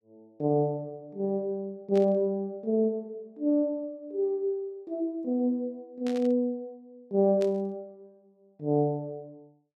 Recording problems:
burst of static; at 2 s, at 6 s and at 7.5 s; peak -10 dB vs average level

